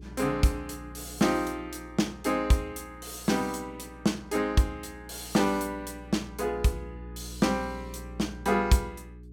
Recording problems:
hum; 60 Hz, harmonics up to 420 Hz, SNR 17 dB

